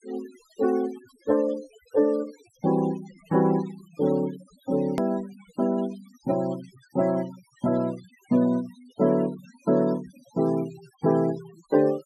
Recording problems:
noise reduction artefacts; signal-to-artefact ratio 21 dB
edit click; at 5 s

